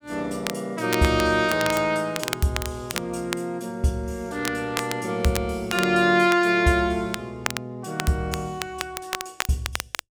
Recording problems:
crackling; vinyl, SNR 9 dB

